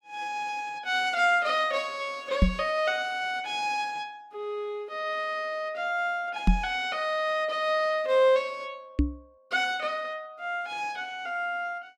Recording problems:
microphone thump; at 2.5 s, at 6.5 s and at 9 s; peak +10 dB vs average level

